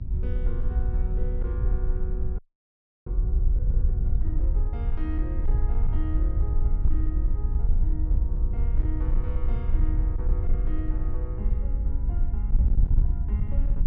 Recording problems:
distortion; hard clipping, signal-to-distortion ratio 13 dB
hum; 50 Hz, harmonics up to 500 Hz, SNR 19 dB
rumble; below 120 Hz, SNR 10 dB
wind noise; below 60 Hz, SNR -14 dB
audio freezing; at 2.5 s for 0.5 s

